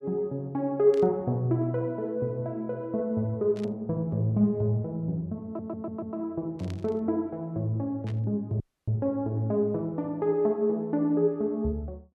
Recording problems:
burst of static; 4 times, first at 1 s; peak -14 dB vs average level
stutter; at 5.5 s
dropout; at 8.5 s

